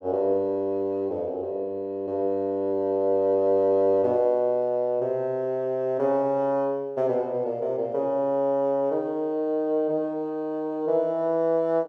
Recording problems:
none

